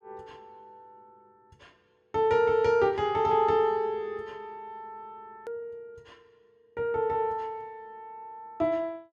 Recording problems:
hard cut with a click; at 5.5 s

